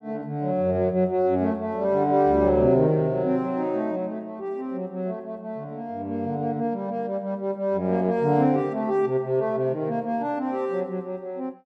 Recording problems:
none

